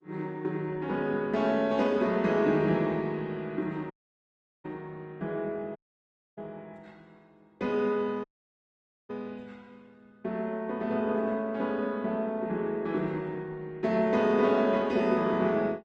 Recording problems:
lossy compression; Opus, log-spectral distance 2 dB
dropout; at 4 s for 0.5 s, at 6 s for 0.5 s and at 8.5 s for 1 s

